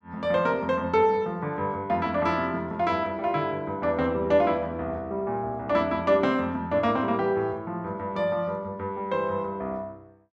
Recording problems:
none

